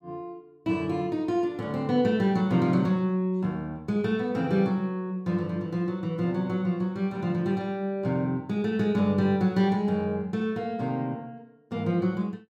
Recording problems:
none

